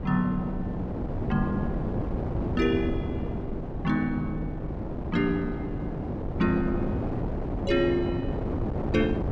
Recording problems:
wind on the microphone; below 380 Hz, SNR 2 dB

